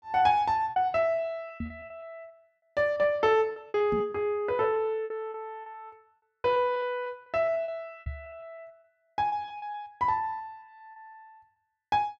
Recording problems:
packet loss; 14% of the sound replaced, filled with repeated pitch periods
knock on the microphone; at 1.5 s, at 4 s and at 8 s; peak -2 dB vs average level

